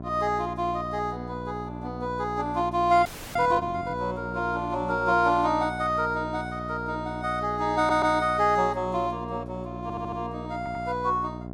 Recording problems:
mains hum; 60 Hz, harmonics up to 1.1 kHz, SNR 11 dB
audio freezing; at 3 s
audio stuttering; at 8 s, at 10 s and at 11 s

